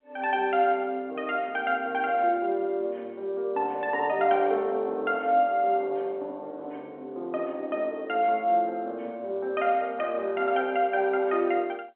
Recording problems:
telephone audio; 280 Hz to 3.4 kHz, G.711

